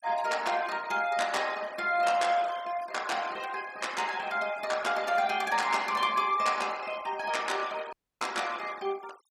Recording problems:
denoising artefacts; signal-to-artefact ratio 18 dB
dropout; at 8 s

